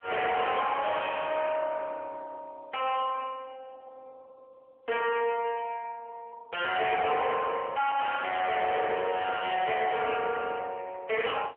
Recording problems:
phone line; 370 Hz to 3.3 kHz, AMR-NB
distortion; soft clipping, signal-to-distortion ratio 6 dB

